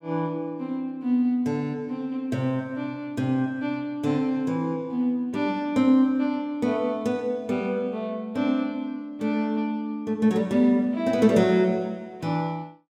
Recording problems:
none

